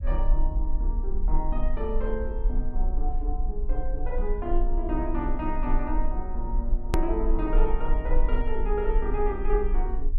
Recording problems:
low-frequency rumble; below 38 Hz, strongest tone 24 Hz, SNR -2 dB
hard cut with a click; at 7 s

